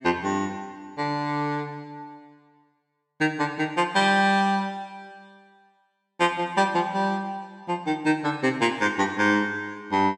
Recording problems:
none

